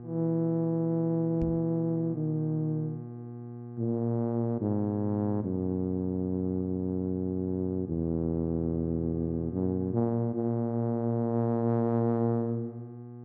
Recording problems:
mains hum; 60 Hz, harmonics up to 840 Hz, SNR 13 dB
microphone bump; at 1.5 s; peak -3 dB vs average level

